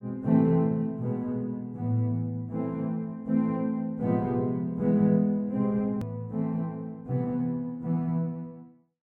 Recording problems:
hard cut with a click; at 6 s

